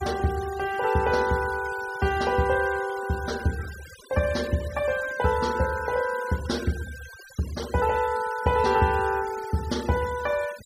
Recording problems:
noise reduction artefacts; signal-to-artefact ratio 17 dB

